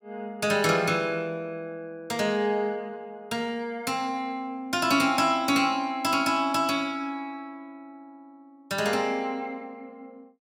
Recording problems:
none

